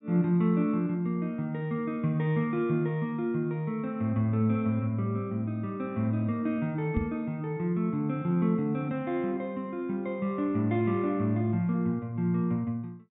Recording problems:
treble cut off; nothing above 4 kHz
microphone thump; at 7 s; peak +3 dB vs average level

